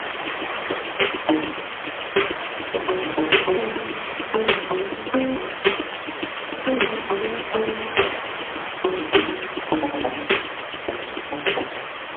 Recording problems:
phone line; 280 Hz to 3.3 kHz, AMR-NB, then MP3
background hiss; SNR 5 dB

